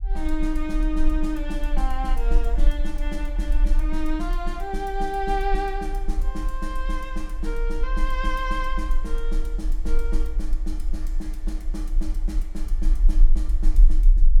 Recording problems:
rumble; below 38 Hz, strongest tone 22 Hz, SNR -4 dB

